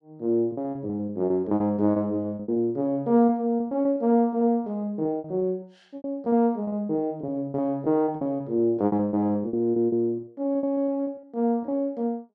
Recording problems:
lost packets; 19% of the sound replaced, filled with repeated pitch periods

